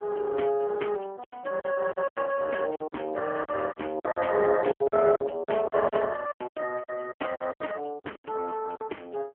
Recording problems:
phone line; 280 Hz to 3.1 kHz, AMR-NB
lost packets; 14% of the sound replaced, filled with silence

